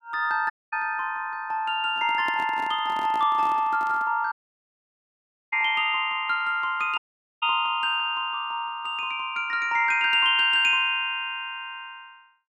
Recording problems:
dropout; at 0.5 s, at 4.5 s for 1 s and at 7 s
microphone handling noise; from 2 to 4 s; peak -10 dB vs average level

